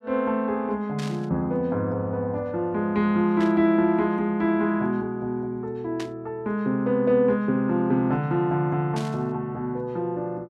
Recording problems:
burst of static; 4 times, first at 1 s; peak -9 dB vs average level

